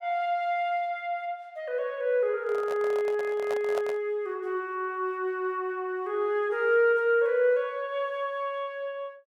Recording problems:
microphone handling noise; from 2.5 to 4 s; peak -2 dB vs average level

